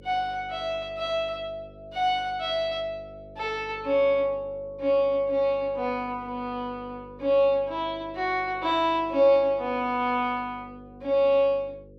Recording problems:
hum; 50 Hz, harmonics up to 550 Hz, SNR 23 dB

